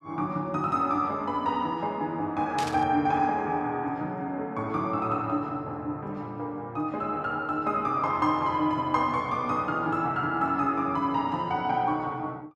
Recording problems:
static burst; at 2.5 s; peak -3 dB vs average level

